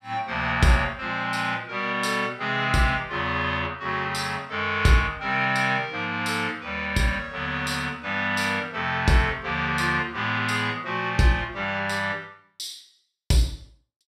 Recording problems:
none

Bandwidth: 14.5 kHz